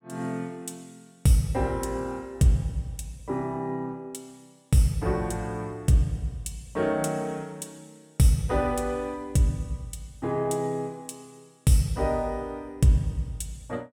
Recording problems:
none

